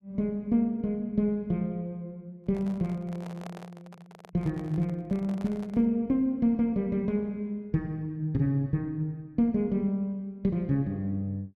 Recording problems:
microphone handling noise; from 2.5 to 6 s; peak -10 dB vs average level

